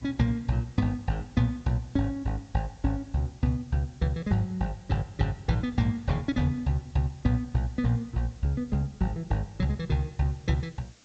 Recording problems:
low-pass filter; nothing above 8 kHz
background hiss; SNR 29 dB

